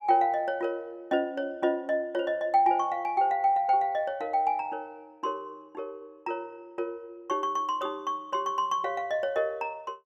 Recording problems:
none

